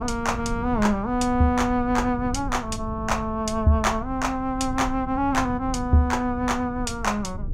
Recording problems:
low-frequency rumble; below 110 Hz, SNR 11 dB

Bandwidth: 16.5 kHz